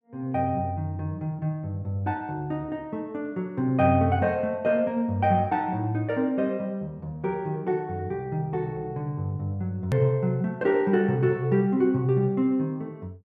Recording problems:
edit click; at 10 s

